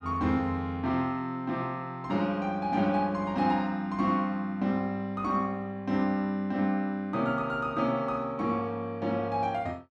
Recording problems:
none

